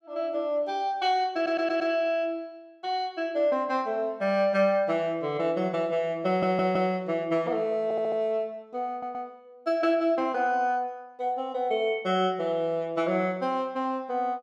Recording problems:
audio stuttering; 4 times, first at 1.5 s

